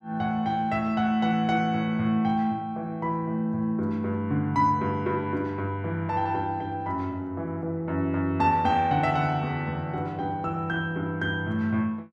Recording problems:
none

